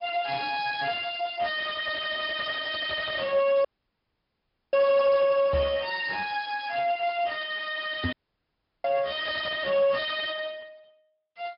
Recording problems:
treble cut off; nothing above 5.2 kHz
lossy codec; Speex, log-spectral distance 6 dB
distortion; soft clipping, signal-to-distortion ratio 7 dB
audio cutting out; at 3.5 s for 1 s and at 8 s for 0.5 s
microphone thump; at 5.5 s and at 8 s; peak +1 dB vs average level

